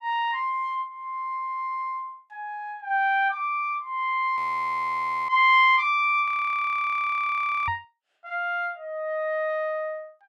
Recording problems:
audio freezing; at 4.5 s for 1 s and at 6.5 s for 1.5 s
microphone thump; at 7.5 s; peak -11 dB vs average level

